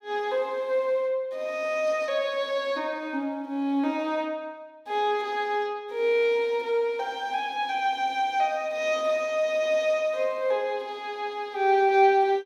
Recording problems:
none

